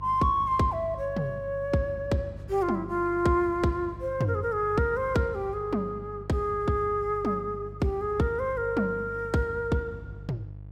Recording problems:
hum; 50 Hz, harmonics up to 500 Hz, SNR 15 dB

